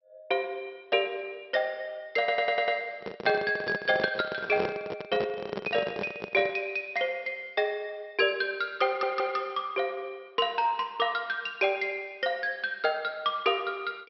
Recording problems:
treble cut off; nothing above 5.6 kHz
stutter; at 2 s and at 9 s
microphone handling noise; from 3 to 6.5 s; peak +2 dB vs average level

